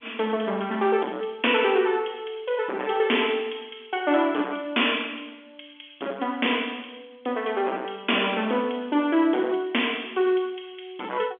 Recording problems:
telephone audio; 260 Hz to 3.5 kHz, G.711
distortion; hard clipping, signal-to-distortion ratio 11 dB

